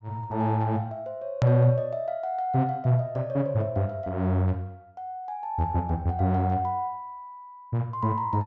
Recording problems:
treble missing; nothing above 8 kHz
hard cut with a click; at 1.5 s

